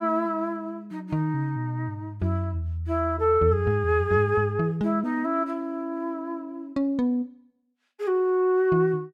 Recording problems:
none

